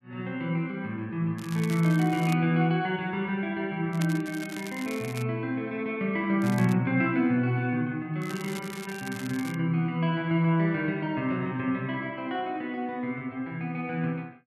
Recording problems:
crackling; 4 times, first at 1.5 s; loose cable, SNR 16 dB

